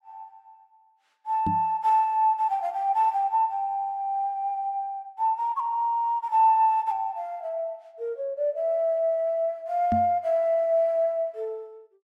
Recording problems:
knock on the microphone; at 1.5 s and at 10 s; peak 0 dB vs average level

